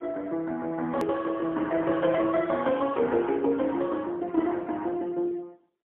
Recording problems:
phone line; 190 Hz to 2.8 kHz, AMR-NB, then MP3
hard cut with a click; at 1 s

